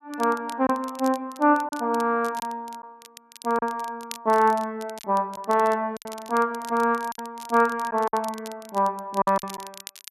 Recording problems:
crackle; vinyl, SNR 19 dB
packet loss; 5% of the sound replaced, filled with silence

